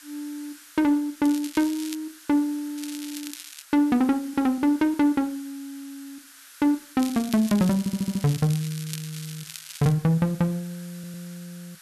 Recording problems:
hiss; SNR 21 dB
crackle; at 1 s, at 3 s and from 7 to 10 s; loose cable, SNR 14 dB
audio stuttering; at 8 s and at 11 s

